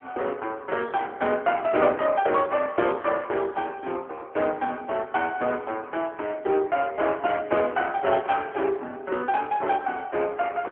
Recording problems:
telephone audio; 280 Hz to 3.3 kHz, AMR-NB

